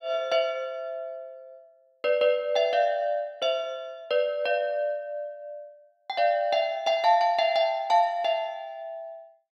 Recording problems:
none

